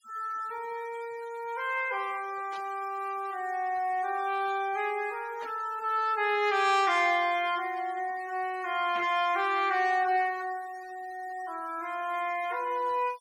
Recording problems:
noise reduction artefacts; signal-to-artefact ratio 21 dB
burst of static; at 2.5 s, at 5.5 s and at 9 s; peak -10 dB vs average level

